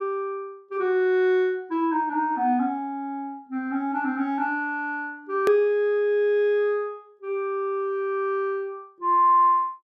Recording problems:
edit click; at 5.5 s

